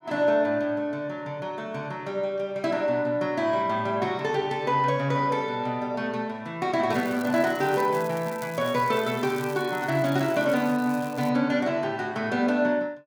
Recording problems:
crackle; from 7 to 11 s; loose cable, SNR 20 dB

